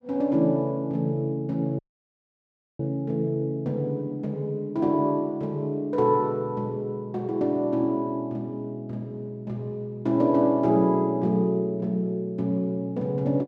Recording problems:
audio cutting out; at 2 s for 1 s

